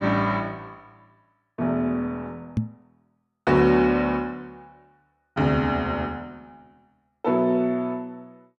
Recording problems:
knock on the microphone; at 2.5 s; peak +3 dB vs average level

